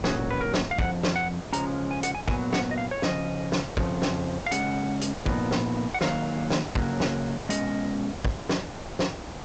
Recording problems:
treble cut off; nothing above 8 kHz
distortion; soft clipping, signal-to-distortion ratio 7 dB
background hiss; SNR 11 dB
wind noise; below 320 Hz, SNR 16 dB

